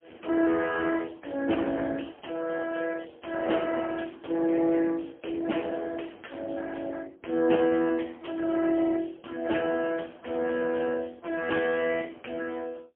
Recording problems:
phone line; 220 Hz to 3.3 kHz, AMR-NB, then MP3

